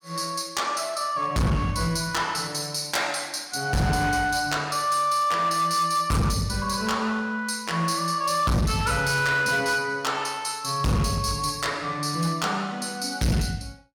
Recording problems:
distorted audio; hard clipping, signal-to-distortion ratio 7 dB

